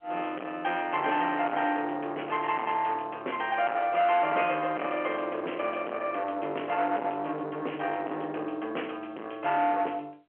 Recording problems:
phone line; 260 Hz to 3.1 kHz, G.711
distorted audio; soft clipping, signal-to-distortion ratio 9 dB

